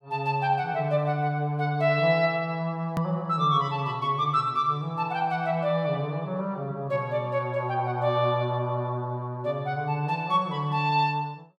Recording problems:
click at an edit; at 3 s

